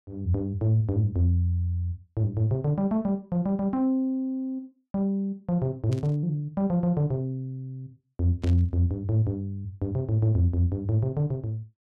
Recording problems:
burst of static; at 6 s and at 8.5 s; peak -13 dB vs average level

